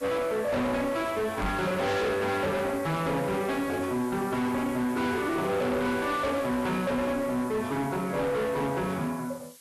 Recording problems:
lossy compression; Vorbis, log-spectral distance 6 dB, nothing above 13.1 kHz
distortion; hard clipping, signal-to-distortion ratio 7 dB
hiss; slope +2 dB per octave, SNR 20 dB
microphone thump; at 1.5 s; peak +1 dB vs average level

